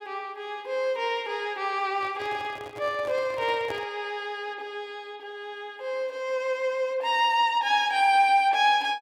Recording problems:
microphone handling noise; from 2 to 4 s; peak -8 dB vs average level

